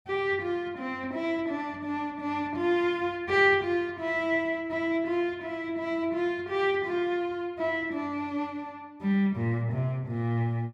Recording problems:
none

